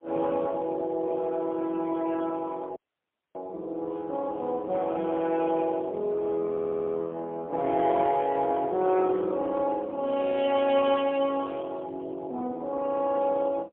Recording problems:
telephone audio; 220 Hz to 3.6 kHz, AMR-NB, then MP3
audio cutting out; at 3 s for 0.5 s
stutter; at 6.5 s

